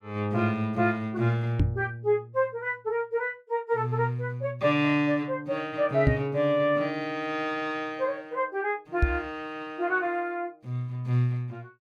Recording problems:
microphone bump; at 1.5 s, at 6 s and at 9 s; peak +7 dB vs average level

